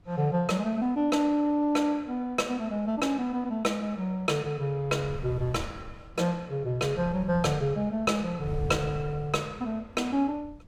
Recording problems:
wind noise; below 120 Hz, SNR 14 dB

